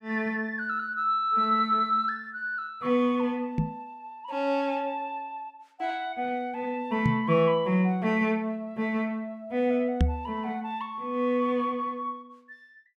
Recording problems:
knock on the microphone; at 3.5 s, at 7 s and at 10 s; peak +7 dB vs average level

